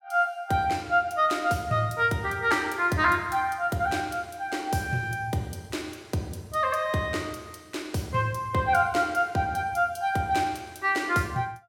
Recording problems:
none

